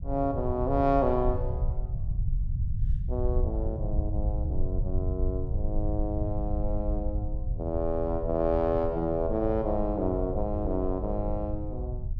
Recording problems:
rumble; below 84 Hz, SNR 2 dB

